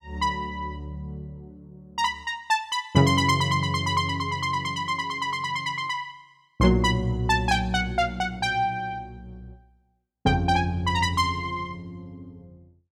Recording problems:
none

